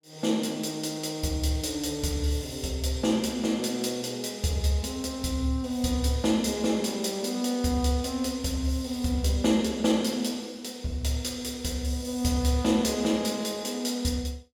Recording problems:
none

